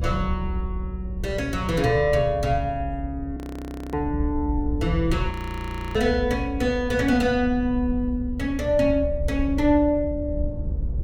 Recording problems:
hum; 50 Hz, harmonics up to 550 Hz, SNR 22 dB
rumble; below 72 Hz, SNR 7 dB
frozen audio; at 3.5 s for 0.5 s and at 5.5 s for 0.5 s

